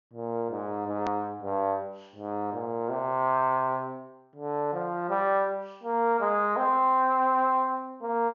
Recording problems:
treble missing; nothing above 7 kHz
hard cut with a click; at 1 s

